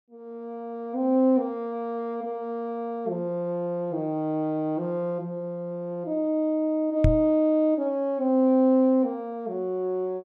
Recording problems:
knock on the microphone; at 7 s; peak +7 dB vs average level

